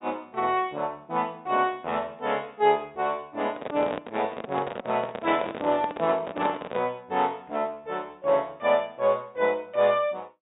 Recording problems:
low-pass filter; nothing above 4 kHz
handling noise; from 3.5 to 7 s; peak -1 dB vs average level

